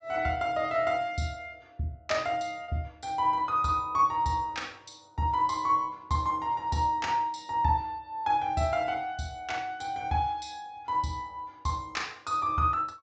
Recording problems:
treble cut off; nothing above 8 kHz
lost packets; 0.3% of the sound replaced, filled with repeated pitch periods

